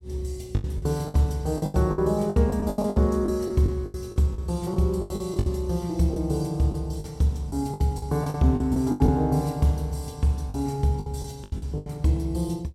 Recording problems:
lost packets; 14% of the sound replaced, filled with the last packet

